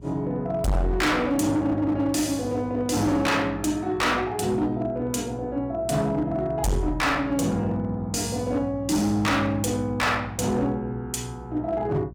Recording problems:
distorted audio; hard clipping, uneven, signal-to-distortion ratio 6 dB
electrical hum; 60 Hz, harmonics up to 480 Hz, SNR 18 dB

